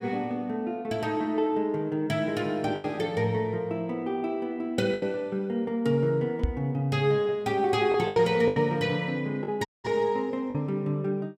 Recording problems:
packet loss; 4% of the sound replaced, filled with the last packet
microphone bump; at 6.5 s; peak +4 dB vs average level
dropout; at 9.5 s

